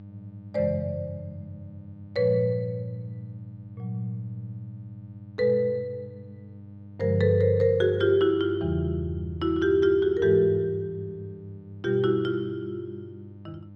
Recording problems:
electrical hum; 50 Hz, harmonics up to 600 Hz, SNR 20 dB

